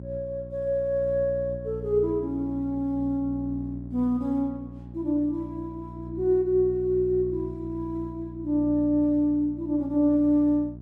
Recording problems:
mains hum; 60 Hz, harmonics up to 600 Hz, SNR 13 dB

